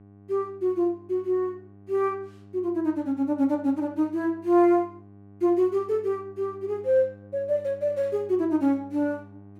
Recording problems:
electrical hum; 50 Hz, harmonics up to 1.1 kHz, SNR 23 dB

